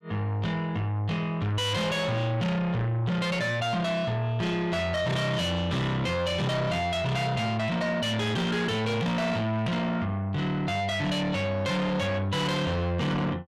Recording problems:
distortion; soft clipping, signal-to-distortion ratio 7 dB

